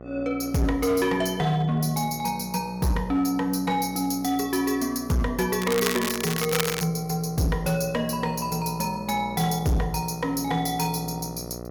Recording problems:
distortion; hard clipping, signal-to-distortion ratio 11 dB
hum; 60 Hz, harmonics up to 1.4 kHz, SNR 15 dB
crackle; from 5.5 to 7 s; loose cable, SNR 4 dB

